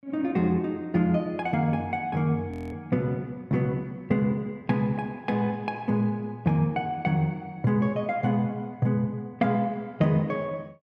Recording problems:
audio freezing; at 2.5 s

